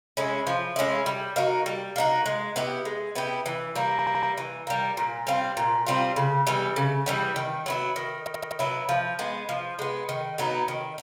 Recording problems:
audio stuttering; at 4 s and at 8 s

